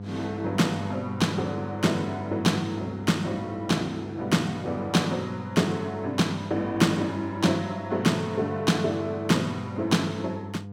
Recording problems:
hum; 50 Hz, harmonics up to 700 Hz, SNR 11 dB

